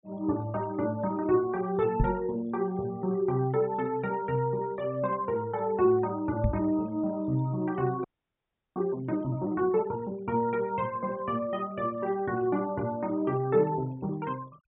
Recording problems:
treble missing; nothing above 4 kHz
denoising artefacts; signal-to-artefact ratio 26 dB
microphone bump; at 2 s and at 6.5 s; peak +6 dB vs average level
frozen audio; at 8 s for 0.5 s

